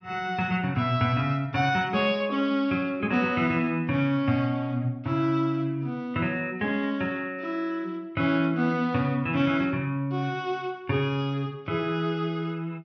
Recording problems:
treble cut off; nothing above 6.1 kHz

